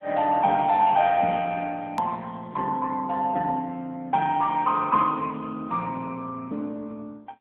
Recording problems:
phone line; 260 Hz to 3.6 kHz, AMR-NB
click at an edit; at 2 s

